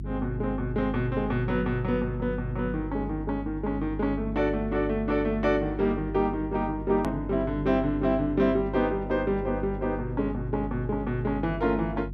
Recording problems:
hum; 50 Hz, harmonics up to 350 Hz, SNR 9 dB
hard cut with a click; at 7 s

